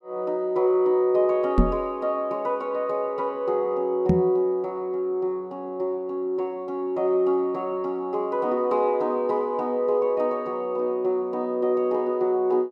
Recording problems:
microphone bump; at 1.5 s and at 4 s; peak +8 dB vs average level

